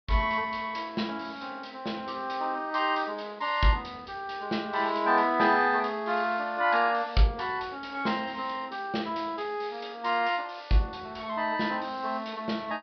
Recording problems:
treble missing; nothing above 5.5 kHz

